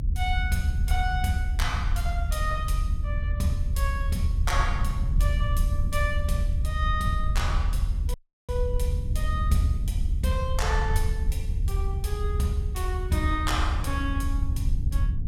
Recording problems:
rumble; below 80 Hz, SNR -3 dB
audio cutting out; at 8 s

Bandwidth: 16.5 kHz